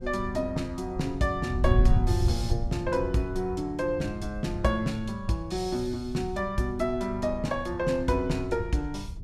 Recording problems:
wind on the microphone; below 100 Hz, SNR 4 dB

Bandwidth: 15 kHz